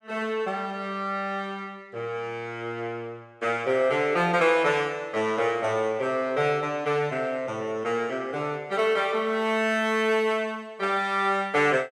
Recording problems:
none

